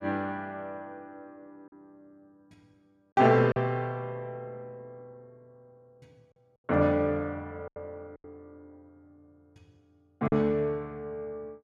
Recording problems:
lost packets; 4% of the sound replaced, filled with silence

